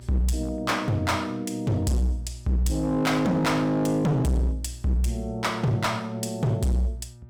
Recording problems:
distortion; hard clipping, uneven, signal-to-distortion ratio 6 dB
electrical hum; 60 Hz, harmonics up to 600 Hz, SNR 21 dB

